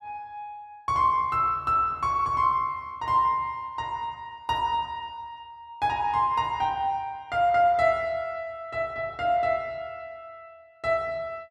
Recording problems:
none

